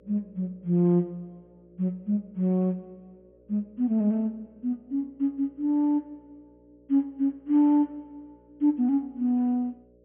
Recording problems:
treble cut off; nothing above 3.3 kHz
hum; 60 Hz, harmonics up to 600 Hz, SNR 32 dB

